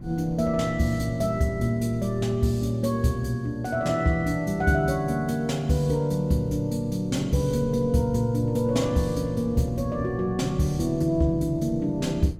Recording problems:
wind noise; below 190 Hz, SNR 17 dB

